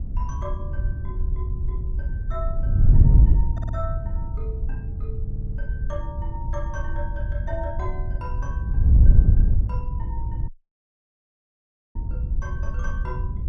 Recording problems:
wind noise; below 86 Hz, SNR -14 dB
stutter; at 3.5 s and at 5.5 s
audio cutting out; at 10 s for 1.5 s

